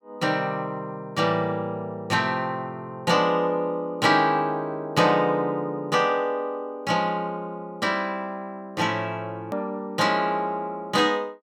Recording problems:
hard cut with a click; at 9.5 s

